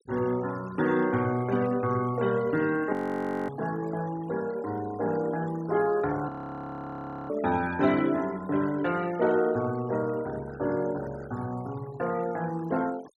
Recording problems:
noise reduction artefacts; signal-to-artefact ratio 19 dB
audio freezing; at 3 s for 0.5 s and at 6.5 s for 1 s

